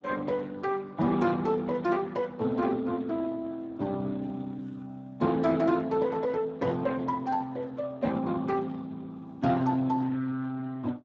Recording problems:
lossy codec; Speex, log-spectral distance 3 dB, nothing above 7.3 kHz

